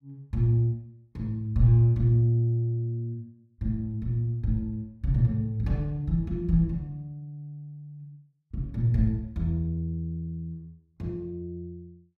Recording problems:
none

